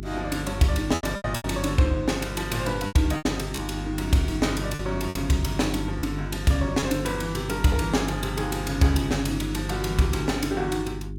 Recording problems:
hum; 50 Hz, harmonics up to 400 Hz, SNR 7 dB
lost packets; 5% of the sound replaced, filled with repeated pitch periods

